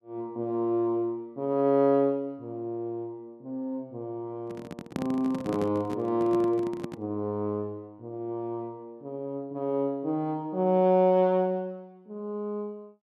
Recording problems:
microphone handling noise; from 4.5 to 7 s; peak 0 dB vs average level

